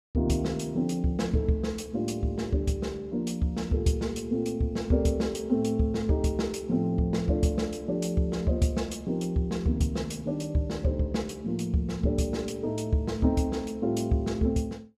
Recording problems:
none

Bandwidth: 15.5 kHz